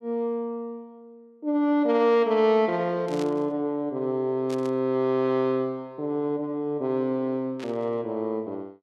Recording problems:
static burst; at 3 s, at 4.5 s and at 7.5 s; peak -11 dB vs average level

